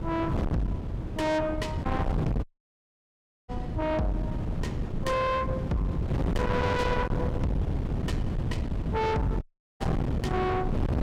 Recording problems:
distortion; soft clipping, signal-to-distortion ratio 6 dB
wind on the microphone; below 330 Hz, SNR 1 dB
audio cutting out; at 2.5 s for 1 s and at 9.5 s

